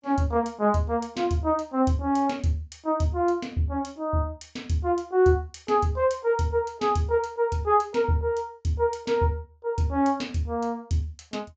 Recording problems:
treble missing; nothing above 8 kHz

